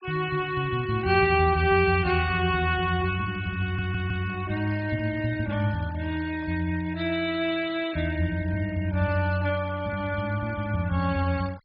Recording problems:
low-pass filter; nothing above 5 kHz
denoising artefacts; signal-to-artefact ratio 20 dB
stutter; at 3.5 s

